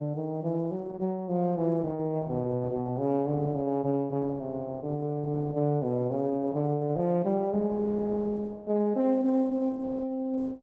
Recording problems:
codec artefacts; MP3, then Opus, log-spectral distance 2 dB

